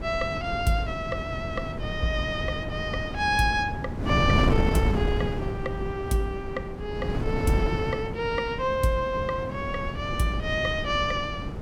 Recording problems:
wind noise; below 290 Hz, SNR 3 dB

